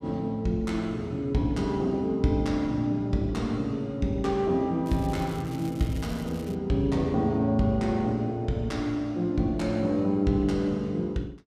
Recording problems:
crackling; from 5 to 6.5 s; loose cable, SNR 22 dB

